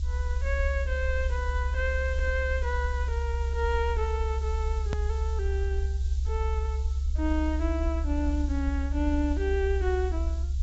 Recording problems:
treble missing; nothing above 7.7 kHz
hiss; SNR 20 dB
rumble; below 70 Hz, strongest tone 68 Hz, SNR -2 dB
hard cut with a click; at 5 s

